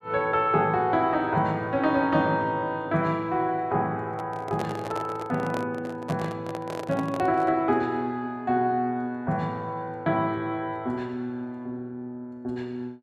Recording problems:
microphone handling noise; from 4 to 7.5 s; peak -2 dB vs average level

